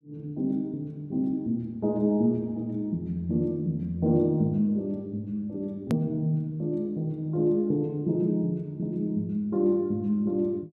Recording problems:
edit click; at 6 s

